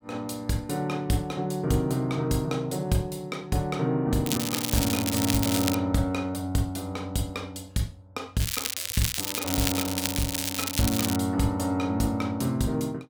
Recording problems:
crackling; from 4.5 to 5.5 s and from 8.5 to 11 s; loose cable, SNR 1 dB

